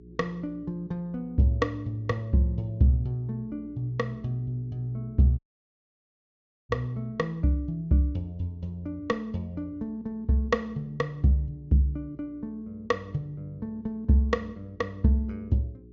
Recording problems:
treble cut off; nothing above 7.2 kHz
hum; 60 Hz, harmonics up to 420 Hz, SNR 23 dB
dropout; at 5.5 s for 1.5 s

